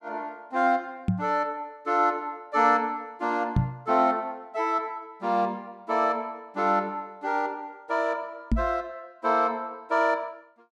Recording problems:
microphone thump; at 1 s, at 3.5 s and at 8.5 s; peak +7 dB vs average level

